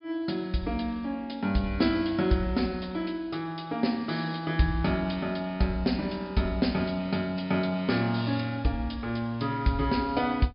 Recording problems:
treble missing; nothing above 5.5 kHz

